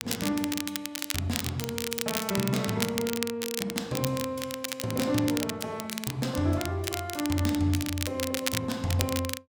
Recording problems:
crackle; vinyl, SNR 4 dB

